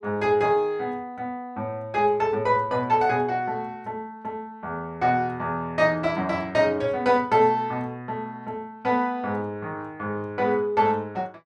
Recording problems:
none

